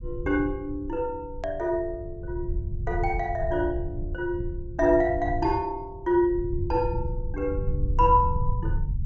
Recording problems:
treble cut off; nothing above 8 kHz
low-frequency rumble; below 96 Hz, SNR 6 dB
edit click; at 1.5 s

